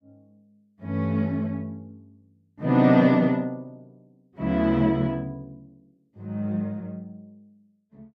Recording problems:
none

